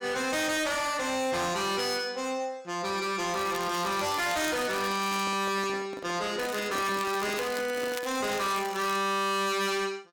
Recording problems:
distortion; hard clipping, signal-to-distortion ratio 8 dB
crackle; from 3.5 to 5 s and from 6.5 to 9 s; loose cable, SNR 13 dB
microphone handling noise; from 4.5 to 8.5 s; peak -6 dB vs average level

